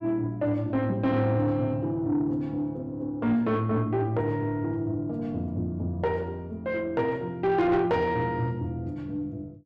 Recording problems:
distorted audio; soft clipping, signal-to-distortion ratio 12 dB

